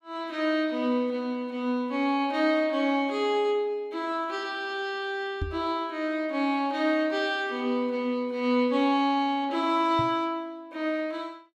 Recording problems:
microphone thump; at 5.5 s and at 10 s; peak -1 dB vs average level

